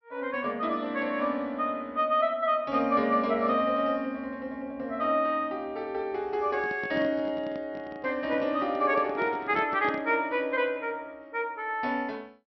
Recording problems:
treble cut off; nothing above 5.7 kHz
handling noise; from 6.5 to 10 s; peak -5 dB vs average level

